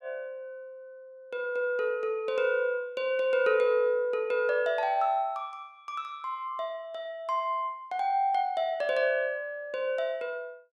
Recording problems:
none

